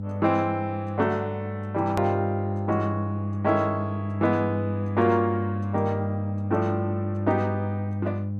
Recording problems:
mains hum; 50 Hz, harmonics up to 500 Hz, SNR 3 dB
edit click; at 2 s

